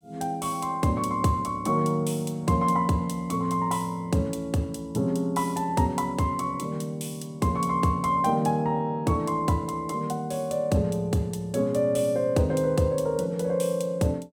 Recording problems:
none

